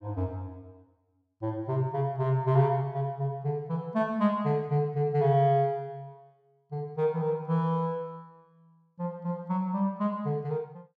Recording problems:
none

